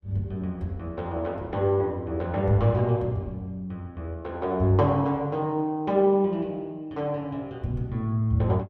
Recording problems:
none

